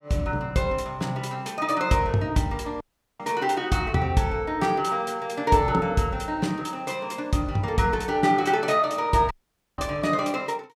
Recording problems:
audio cutting out; at 3 s and at 9.5 s

